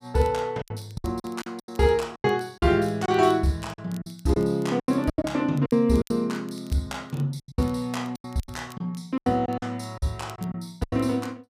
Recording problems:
crackle; vinyl, SNR 28 dB
packet loss; 13% of the sound replaced, filled with silence

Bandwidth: 15 kHz